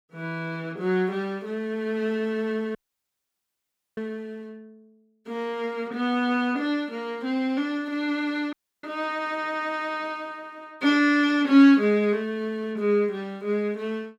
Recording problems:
dropout; at 3 s for 1 s and at 8.5 s

